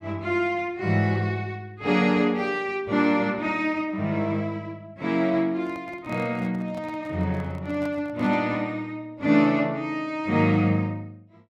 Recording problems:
handling noise; from 5.5 to 8.5 s; peak -10 dB vs average level

